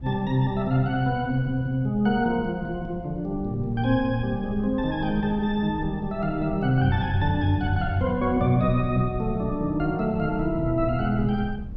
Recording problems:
low-frequency rumble; below 100 Hz, SNR 13 dB

